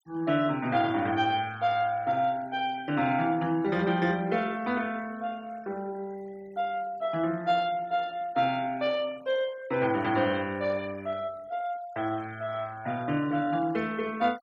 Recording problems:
noise reduction artefacts; signal-to-artefact ratio 23 dB

